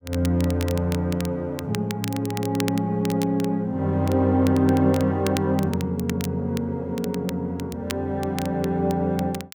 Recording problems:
crackling; vinyl, SNR 15 dB

